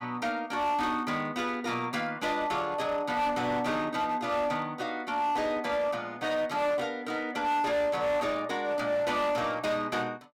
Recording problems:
distortion; hard clipping, signal-to-distortion ratio 11 dB

